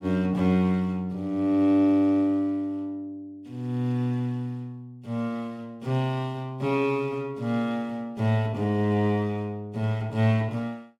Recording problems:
none

